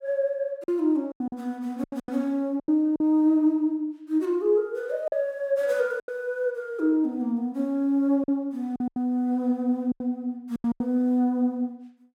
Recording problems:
lost packets; 8% of the sound replaced, filled with silence

